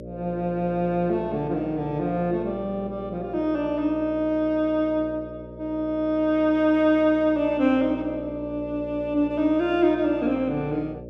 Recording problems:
hum; 60 Hz, harmonics up to 600 Hz, SNR 15 dB

